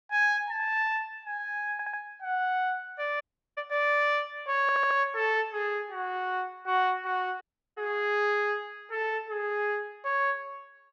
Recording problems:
audio stuttering; at 1.5 s and at 4.5 s
audio cutting out; at 3 s and at 7.5 s

